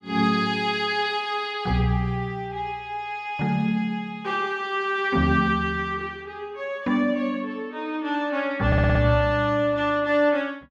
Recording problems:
stutter; at 8.5 s

